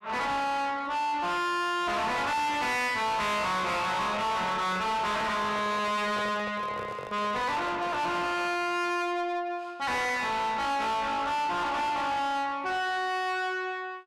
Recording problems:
distorted audio; soft clipping, signal-to-distortion ratio 5 dB
microphone handling noise; from 4.5 to 8.5 s; peak -3 dB vs average level

